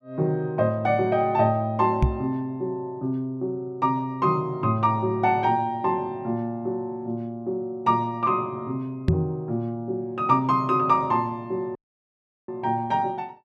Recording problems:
knock on the microphone; at 2 s and at 9 s; peak +8 dB vs average level
audio cutting out; at 12 s for 0.5 s

